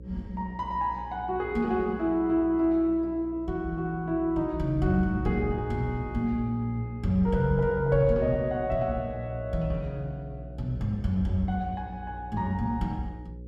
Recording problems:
hum; 60 Hz, harmonics up to 540 Hz, SNR 15 dB

